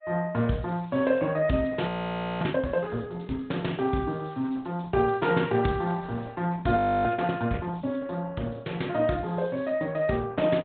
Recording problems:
low-pass filter; nothing above 4 kHz
lossy codec; Opus, log-spectral distance 4 dB
frozen audio; at 2 s for 0.5 s and at 7 s

